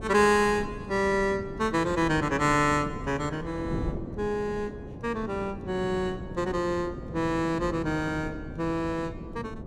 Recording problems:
wind noise; below 330 Hz, SNR 11 dB

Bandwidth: 17 kHz